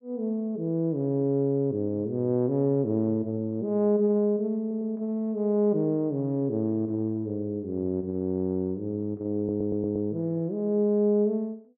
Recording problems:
treble cut off; nothing above 3.6 kHz
audio stuttering; at 4.5 s and at 9.5 s

